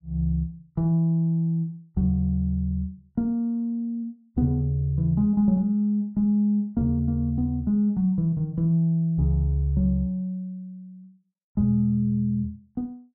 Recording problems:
none

